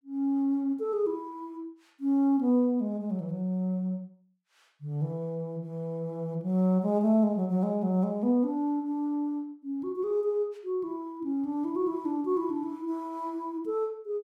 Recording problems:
none

